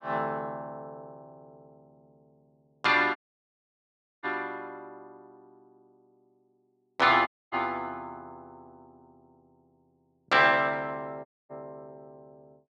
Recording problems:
dropout; at 3 s for 1 s, at 7.5 s and at 11 s

